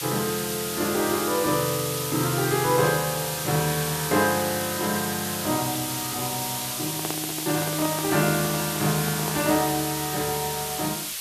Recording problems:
hiss; slope +4 dB per octave, SNR 2 dB
handling noise; from 7 to 9.5 s; peak -3 dB vs average level

